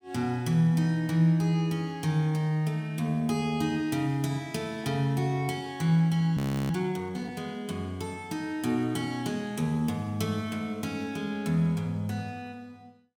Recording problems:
audio freezing; at 6.5 s

